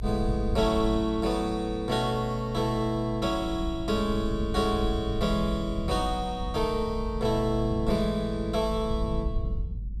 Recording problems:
rumble; below 86 Hz, strongest tone 48 Hz, SNR 7 dB

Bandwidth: 14.5 kHz